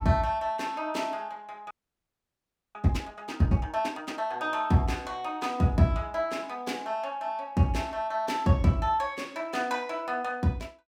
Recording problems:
audio freezing; at 1.5 s for 1 s

